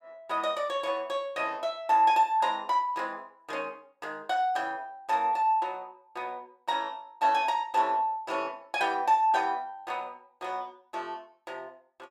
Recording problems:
none

